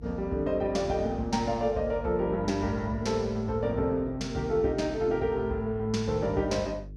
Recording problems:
hum; 50 Hz, harmonics up to 450 Hz, SNR 16 dB

